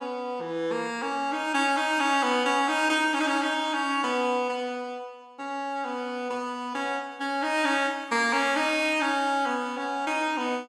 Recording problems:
none

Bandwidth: 16.5 kHz